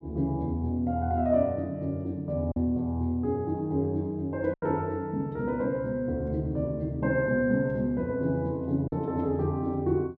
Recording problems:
packet loss; 1.6% of the sound replaced, filled with silence

